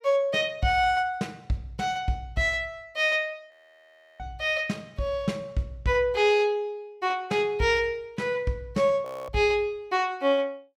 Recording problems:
audio freezing; at 3.5 s for 0.5 s and at 9 s

